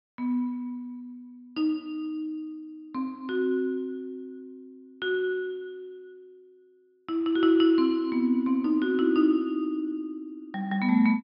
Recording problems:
treble cut off; nothing above 5.5 kHz

